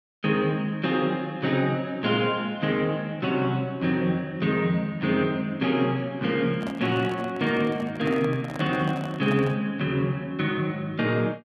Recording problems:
microphone handling noise; from 6.5 to 9.5 s; peak -7 dB vs average level

